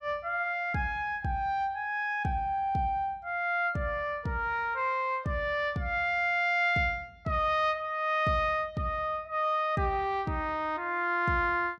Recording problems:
none

